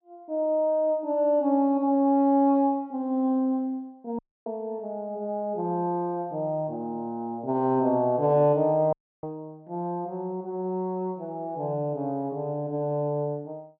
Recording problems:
dropout; at 4 s and at 9 s

